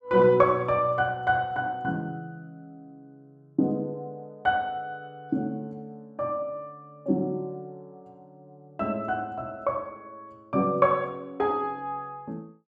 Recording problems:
none

